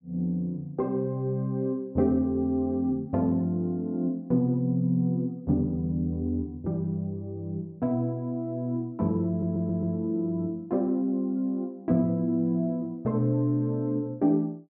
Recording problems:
audio stuttering; at 9.5 s

